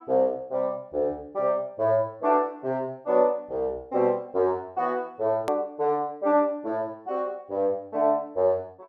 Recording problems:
edit click; at 5.5 s

